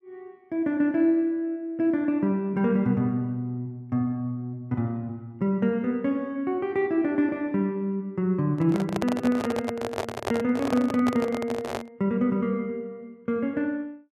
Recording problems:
handling noise; from 8.5 to 12 s; peak +1 dB vs average level

